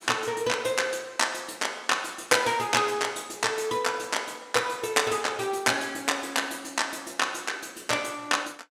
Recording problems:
none

